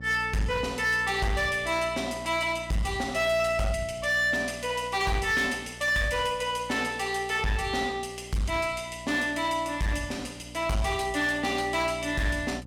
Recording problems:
distortion; hard clipping, signal-to-distortion ratio 11 dB
hum; 60 Hz, harmonics up to 840 Hz, SNR 18 dB

